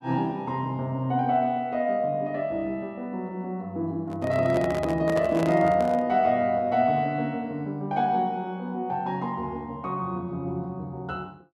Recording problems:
microphone handling noise; from 4 to 6 s; peak -2 dB vs average level

